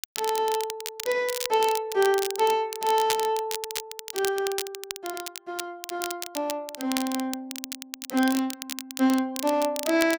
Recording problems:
crackling; vinyl, SNR 8 dB

